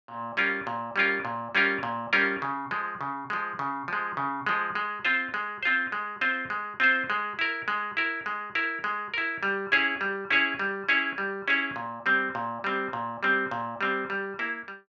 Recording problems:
none

